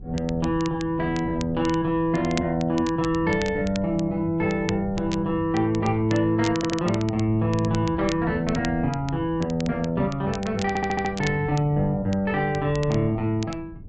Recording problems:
treble cut off; nothing above 8 kHz
wind on the microphone; below 160 Hz, SNR 15 dB
crackle; vinyl, SNR 17 dB
stutter; at 6.5 s and at 11 s

